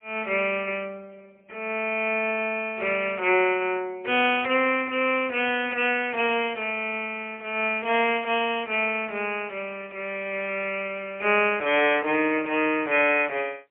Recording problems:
telephone audio; 320 Hz to 3.2 kHz, AMR-NB, then MP3

